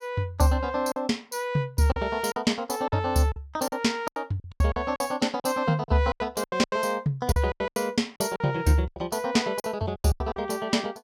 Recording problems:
packet loss; 13% of the sound replaced, filled with silence

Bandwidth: 16.5 kHz